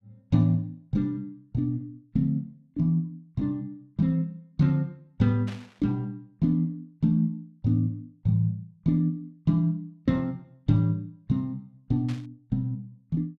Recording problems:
burst of static; at 5.5 s and at 12 s; peak -12 dB vs average level

